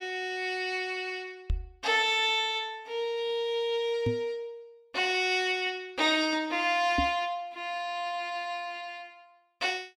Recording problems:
microphone bump; at 1.5 s, at 4 s and at 7 s; peak +2 dB vs average level

